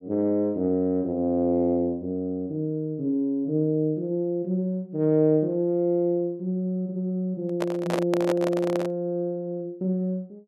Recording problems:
microphone handling noise; from 7.5 to 9 s; peak +1 dB vs average level

